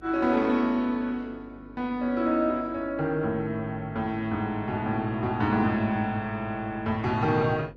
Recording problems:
lossy codec; Opus, log-spectral distance 2 dB
hum; 50 Hz, harmonics up to 550 Hz, SNR 23 dB

